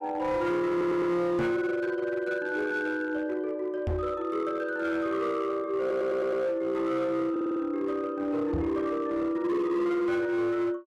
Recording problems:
distorted audio; hard clipping, signal-to-distortion ratio 12 dB
audio stuttering; at 0.5 s, at 6 s and at 7.5 s
microphone bump; at 1.5 s, at 4 s and at 8.5 s; peak +1 dB vs average level

